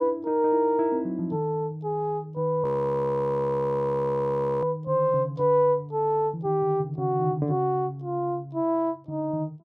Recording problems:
audio freezing; at 2.5 s for 2 s

